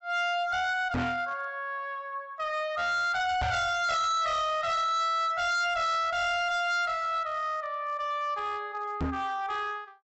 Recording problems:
treble cut off; nothing above 7.8 kHz
distortion; hard clipping, signal-to-distortion ratio 6 dB
knock on the microphone; at 1 s, at 3.5 s and at 9 s; peak +2 dB vs average level

